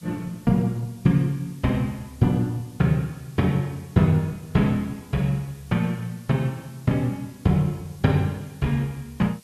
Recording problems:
background hiss; slope +1 dB per octave, SNR 27 dB

